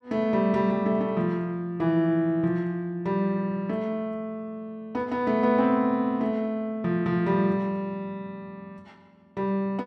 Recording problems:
none

